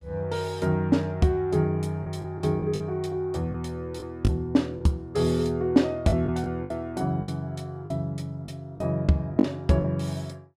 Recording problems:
packet loss; 5% of the sound replaced, filled with the last packet

